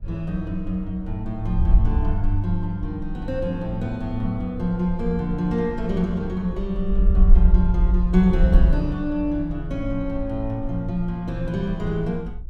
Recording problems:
wind noise; below 56 Hz, SNR 1 dB

